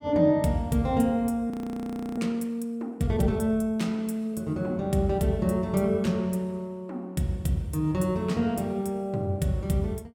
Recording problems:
audio freezing; at 1.5 s for 0.5 s

